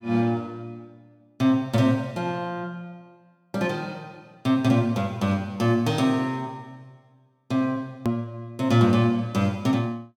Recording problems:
click at an edit; at 8 s

